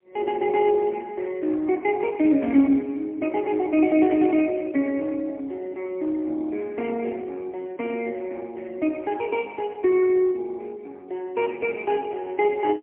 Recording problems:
phone line; 240 Hz to 3.3 kHz, AMR-NB, then MP3

